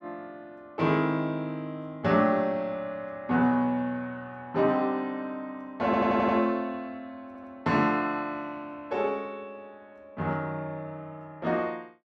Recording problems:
stutter; at 6 s and at 7.5 s

